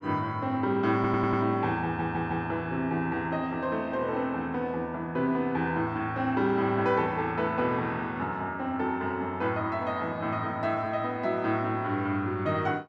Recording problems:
stutter; at 1 s and at 2 s

